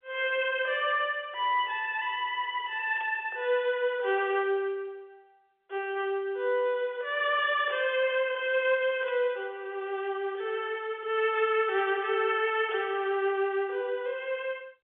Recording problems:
telephone audio; 320 Hz to 3.5 kHz, G.711
static burst; at 3 s and at 9 s; peak -15 dB vs average level

